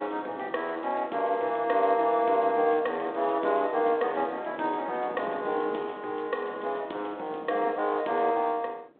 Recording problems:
phone line; 260 Hz to 3.7 kHz, G.726
wind on the microphone; below 560 Hz, SNR 19 dB

